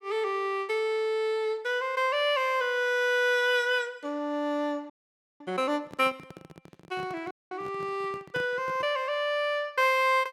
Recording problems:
frozen audio; at 5 s for 0.5 s and at 7.5 s
handling noise; from 6 to 9 s; peak -8 dB vs average level

